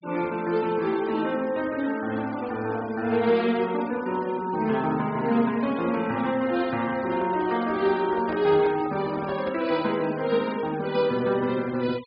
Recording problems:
treble cut off; nothing above 5 kHz
noise reduction artefacts; signal-to-artefact ratio 19 dB
handling noise; from 7 to 9.5 s; peak -7 dB vs average level

